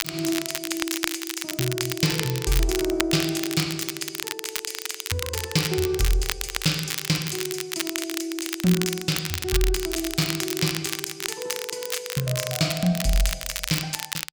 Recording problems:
crackle; vinyl, SNR 3 dB

